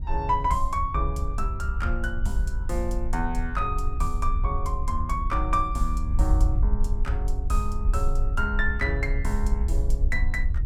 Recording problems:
wind on the microphone; below 60 Hz, SNR -1 dB

